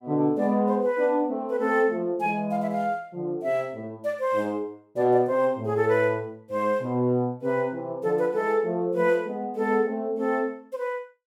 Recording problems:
none

